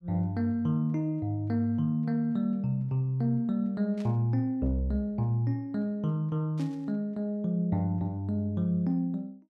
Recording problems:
static burst; at 4 s and at 6.5 s; peak -16 dB vs average level

